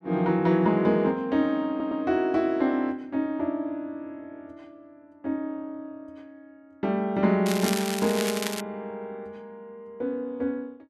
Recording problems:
stutter; at 1.5 s
crackling; from 7.5 to 8.5 s; loose cable, SNR 6 dB

